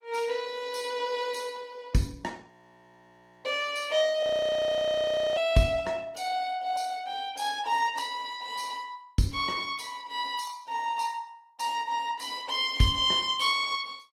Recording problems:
lossy compression; Opus, log-spectral distance 4 dB, nothing above 20.1 kHz
frozen audio; at 2.5 s for 1 s and at 4 s for 1 s

